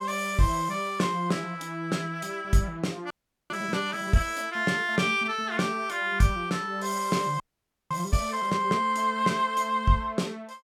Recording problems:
frozen audio; at 3 s and at 7.5 s for 0.5 s

